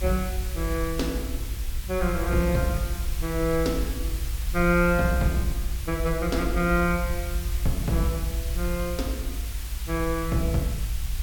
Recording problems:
background hiss; slope +1 dB per octave, SNR 11 dB
low-frequency rumble; below 60 Hz, SNR 4 dB

